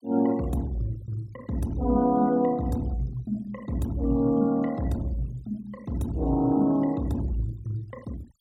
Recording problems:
noise reduction artefacts; signal-to-artefact ratio 25 dB

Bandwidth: 16.5 kHz